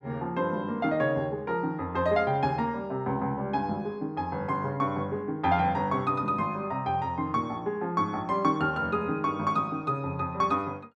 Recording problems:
none

